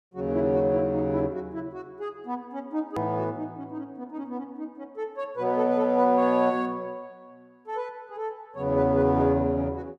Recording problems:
edit click; at 3 s

